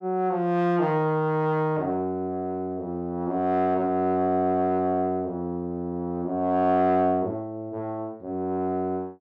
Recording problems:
none

